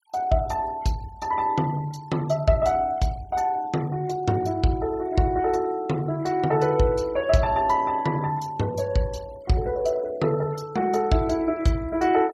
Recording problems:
noise reduction artefacts; signal-to-artefact ratio 24 dB

